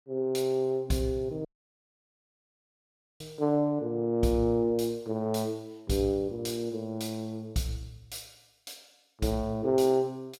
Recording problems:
audio cutting out; at 1.5 s for 2 s

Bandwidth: 16.5 kHz